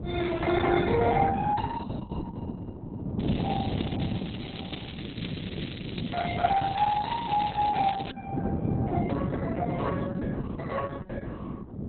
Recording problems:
lossy compression; Opus, log-spectral distance 8 dB, nothing above 3.9 kHz
wind on the microphone; below 310 Hz, SNR 3 dB
crackling; from 3 to 8 s; loose cable, SNR 12 dB

